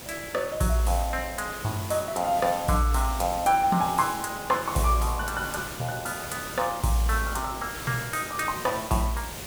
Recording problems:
hiss; slope -3 dB per octave, SNR 10 dB

